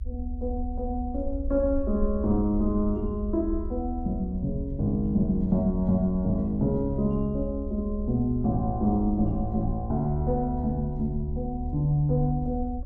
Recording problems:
low-frequency rumble; below 70 Hz, SNR 8 dB

